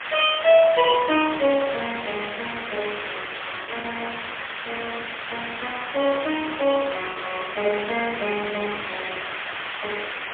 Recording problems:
phone line; 320 Hz to 3.7 kHz, AMR-NB, then MP3
background hiss; SNR 6 dB
packet loss; 1.2% of the sound replaced, filled with the last packet

